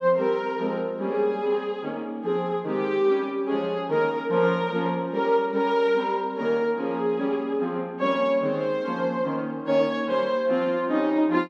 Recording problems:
none

